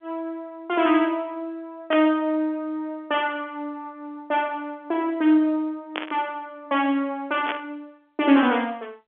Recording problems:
telephone audio; 190 Hz to 3.4 kHz, G.711
burst of static; at 2 s, at 6 s and at 7.5 s; peak -1 dB vs average level

